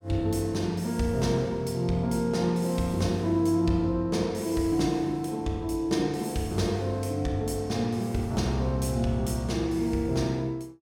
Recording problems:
none

